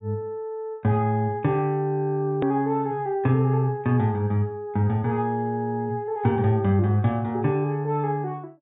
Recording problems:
low-pass filter; nothing above 4 kHz
hard cut with a click; at 2.5 s

